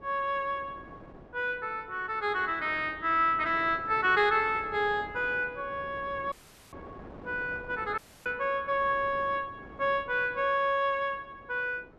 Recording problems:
wind noise; below 670 Hz, SNR 20 dB
dropout; at 6.5 s and at 8 s

